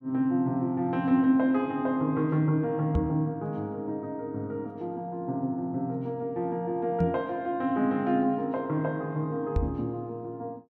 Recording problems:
microphone bump; at 3 s, at 7 s and at 9.5 s; peak +5 dB vs average level

